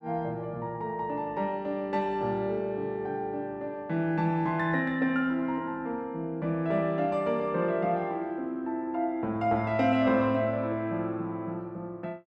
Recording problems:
none

